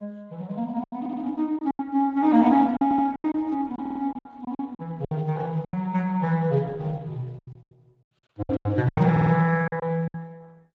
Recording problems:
lossy codec; Speex, then Opus, log-spectral distance 2 dB
packet loss; 12% of the sound replaced, filled with silence
stutter; 4 times, first at 1 s

